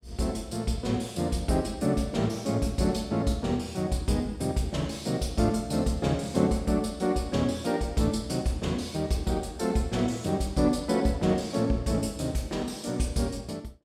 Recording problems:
none

